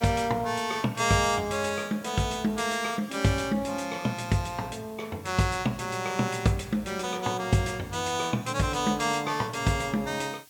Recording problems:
hiss; slope +4 dB per octave, SNR 25 dB

